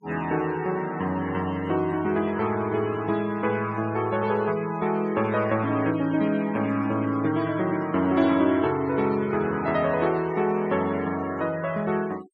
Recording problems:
noise reduction artefacts; signal-to-artefact ratio 19 dB

